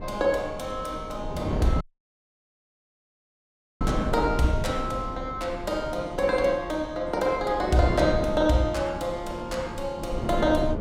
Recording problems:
wind noise; below 300 Hz, SNR 7 dB
audio cutting out; at 2 s for 2 s

